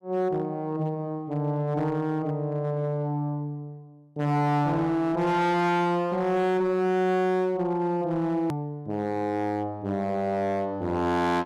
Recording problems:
distortion; hard clipping, signal-to-distortion ratio 11 dB
edit click; at 8.5 s

